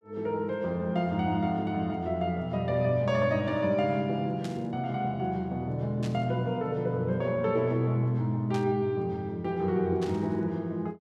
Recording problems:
burst of static; 4 times, first at 4.5 s; peak -10 dB vs average level

